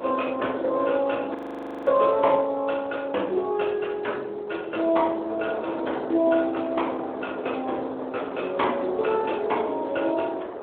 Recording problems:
telephone audio; 300 Hz to 3.5 kHz, Speex
wind noise; below 840 Hz, SNR 11 dB
frozen audio; at 1.5 s for 0.5 s

